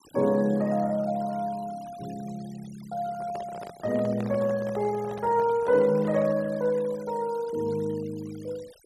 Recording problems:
denoising artefacts; signal-to-artefact ratio 23 dB
microphone handling noise; from 3 to 6.5 s; peak -8 dB vs average level

